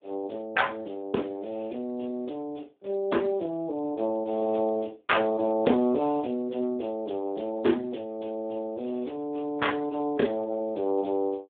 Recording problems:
phone line; 220 Hz to 3.6 kHz, Speex

